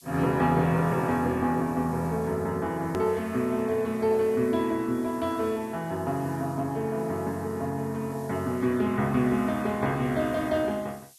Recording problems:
lossy codec; MP2, log-spectral distance 2 dB, nothing above 13.1 kHz
hiss; SNR 24 dB
edit click; at 3 s

